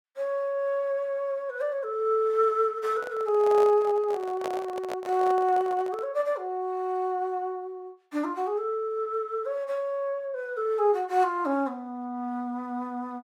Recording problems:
microphone handling noise; from 3 to 6 s; peak -2 dB vs average level

